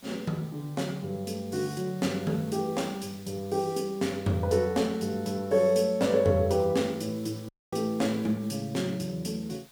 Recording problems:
background hiss; slope 0 dB per octave, SNR 24 dB
dropout; at 7.5 s

